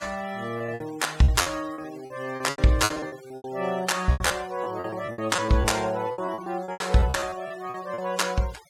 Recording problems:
noise reduction artefacts; signal-to-artefact ratio 20 dB
lost packets; 17% of the sound replaced, filled with repeated pitch periods

